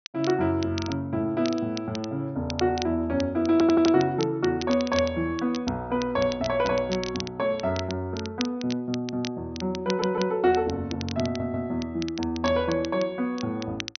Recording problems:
treble cut off; nothing above 6.1 kHz
crackling; vinyl, SNR 13 dB
stutter; at 3.5 s, at 10 s and at 11 s

